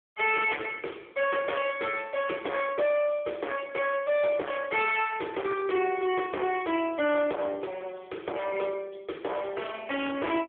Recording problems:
telephone audio; 300 Hz to 3.4 kHz, AMR-NB
distorted audio; hard clipping, uneven, signal-to-distortion ratio 6 dB

